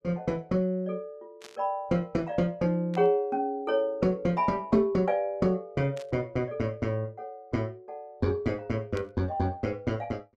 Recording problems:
static burst; 4 times, first at 1.5 s; peak -12 dB vs average level

